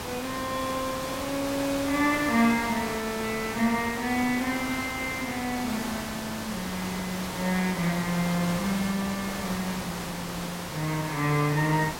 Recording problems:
background hiss; slope -4 dB per octave, SNR 6 dB

